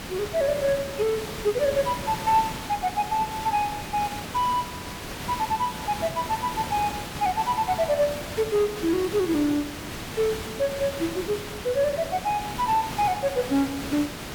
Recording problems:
background hiss; slope -3 dB per octave, SNR 8 dB

